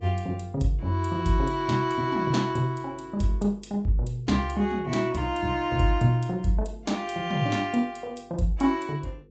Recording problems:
treble missing; nothing above 7.6 kHz
lossy compression; Vorbis, log-spectral distance 2 dB
hum; 50 Hz, harmonics up to 500 Hz, SNR 27 dB

